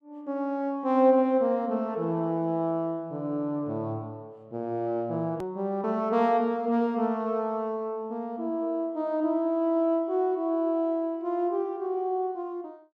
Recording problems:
click at an edit; at 5.5 s

